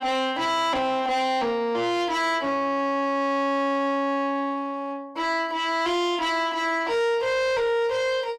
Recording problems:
distorted audio; soft clipping, signal-to-distortion ratio 11 dB

